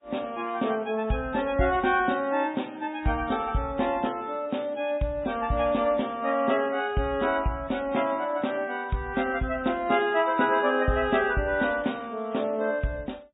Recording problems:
treble missing; nothing above 3.8 kHz
codec artefacts; MP3, log-spectral distance 3 dB

